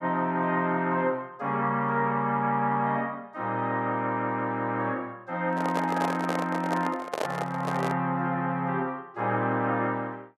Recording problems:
microphone handling noise; from 5.5 to 8 s; peak +2 dB vs average level

